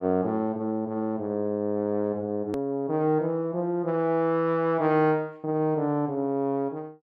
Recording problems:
hard cut with a click; at 2.5 s

